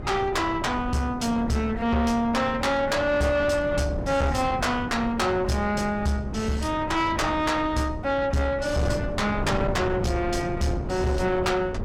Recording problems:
distortion; soft clipping, signal-to-distortion ratio 11 dB
wind on the microphone; below 340 Hz, SNR 8 dB

